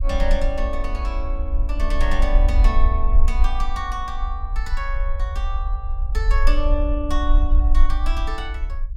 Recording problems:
rumble; below 48 Hz, strongest tone 22 Hz, SNR -6 dB

